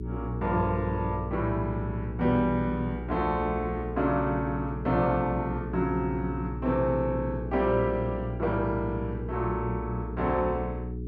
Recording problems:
hum; 60 Hz, harmonics up to 420 Hz, SNR 7 dB

